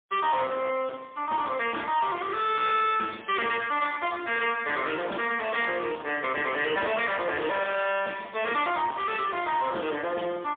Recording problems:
telephone audio; 240 Hz to 3.4 kHz, AMR-NB, then MP3
distortion; soft clipping, signal-to-distortion ratio 11 dB

